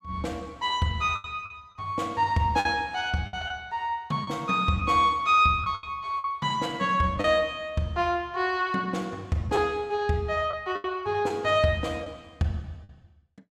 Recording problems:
packet loss; 5% of the sound replaced, filled with the last packet

